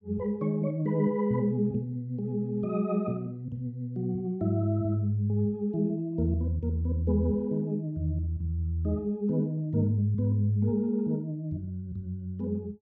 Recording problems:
none

